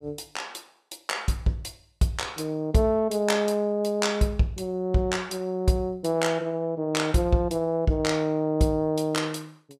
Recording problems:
none

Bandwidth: 15 kHz